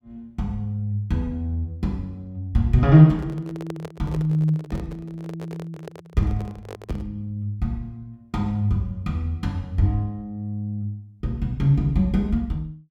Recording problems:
microphone handling noise; from 3 to 7 s; peak -7 dB vs average level

